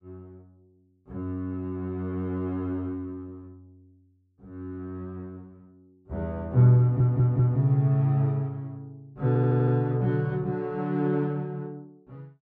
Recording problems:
stutter; at 7 s and at 9.5 s

